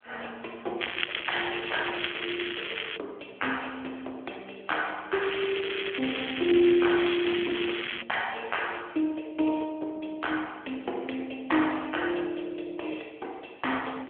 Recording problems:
phone line; 280 Hz to 3.4 kHz, AMR-NB
crackling; from 1 to 3 s and from 5 to 8 s; loose cable, SNR 2 dB

